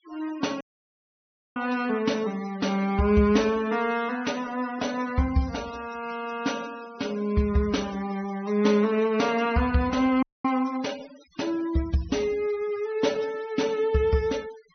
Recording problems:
low-pass filter; nothing above 6.1 kHz
denoising artefacts; signal-to-artefact ratio 20 dB
audio cutting out; at 0.5 s for 1 s and at 10 s

